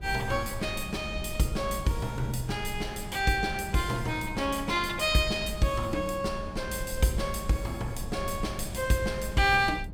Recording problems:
rumble; below 110 Hz, SNR 12 dB

